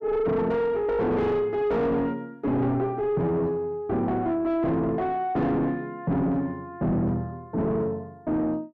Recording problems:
distorted audio; soft clipping, signal-to-distortion ratio 7 dB

